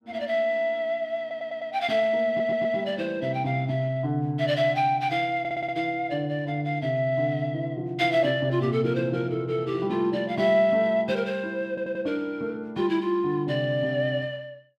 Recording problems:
stutter; 4 times, first at 1 s

